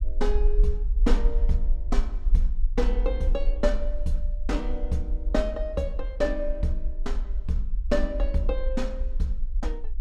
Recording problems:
rumble; below 42 Hz, strongest tone 22 Hz, SNR -2 dB

